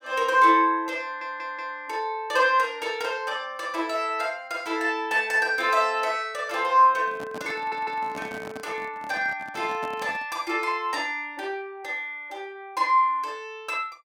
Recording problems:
audio stuttering; at 1 s and at 7.5 s
microphone handling noise; from 7 to 10 s; peak -9 dB vs average level

